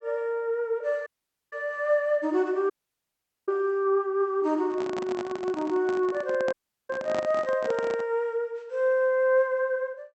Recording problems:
treble cut off; nothing above 8 kHz
audio cutting out; at 1 s, at 2.5 s for 1 s and at 6.5 s
microphone handling noise; from 4.5 to 8 s; peak -4 dB vs average level

